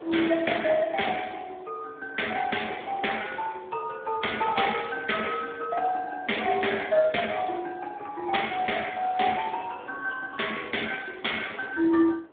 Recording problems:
phone line; 280 Hz to 3.5 kHz, Speex
wind noise; below 950 Hz, SNR 22 dB

